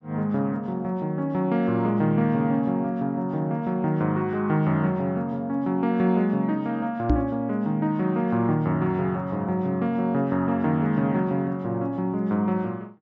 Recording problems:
low-pass filter; nothing above 8 kHz
microphone bump; at 7 s; peak +6 dB vs average level

